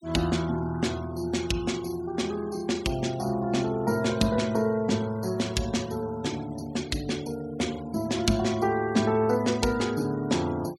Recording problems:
denoising artefacts; signal-to-artefact ratio 20 dB

